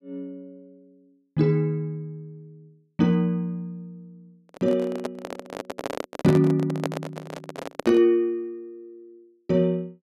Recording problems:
microphone handling noise; from 4.5 to 8 s; peak 0 dB vs average level

